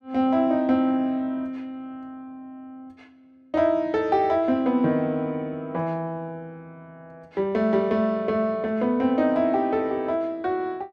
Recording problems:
none

